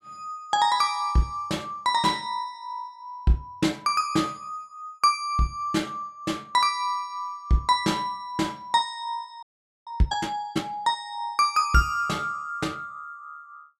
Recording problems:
frozen audio; at 9.5 s

